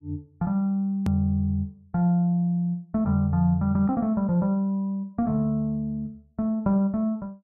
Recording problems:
edit click; at 1 s

